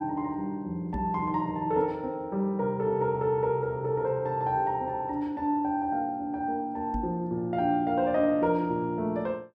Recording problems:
knock on the microphone; at 1 s and at 7 s; peak -1 dB vs average level

